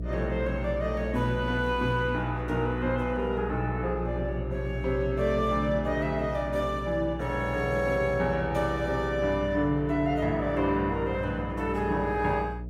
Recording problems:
hum; 60 Hz, harmonics up to 660 Hz, SNR 9 dB

